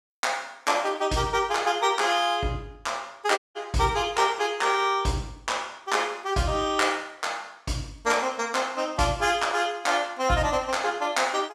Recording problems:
audio cutting out; at 3.5 s

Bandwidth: 14.5 kHz